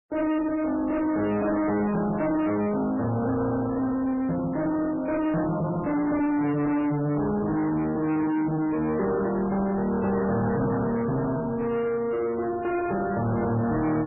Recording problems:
lossy codec; MP3, log-spectral distance 3 dB, nothing above 2.5 kHz
distortion; soft clipping, signal-to-distortion ratio 7 dB

